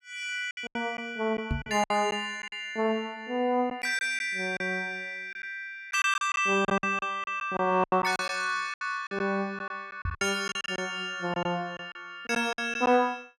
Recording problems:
packet loss; 11% of the sound replaced, filled with silence
microphone bump; at 1.5 s and at 10 s; peak +2 dB vs average level

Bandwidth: 14.5 kHz